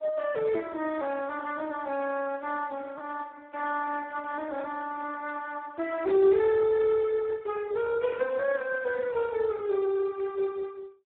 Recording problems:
telephone audio; 320 Hz to 2 kHz, Speex

